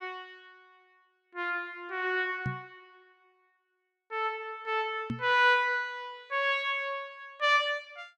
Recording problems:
knock on the microphone; at 2.5 s and at 5 s; peak -1 dB vs average level

